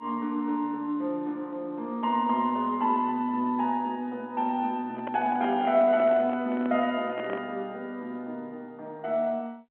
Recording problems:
phone line; 190 Hz to 3.4 kHz, G.711
microphone handling noise; from 5 to 7.5 s; peak -6 dB vs average level

